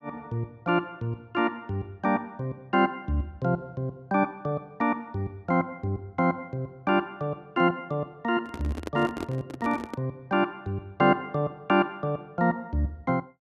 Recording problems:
handling noise; from 8.5 to 10 s; peak -2 dB vs average level

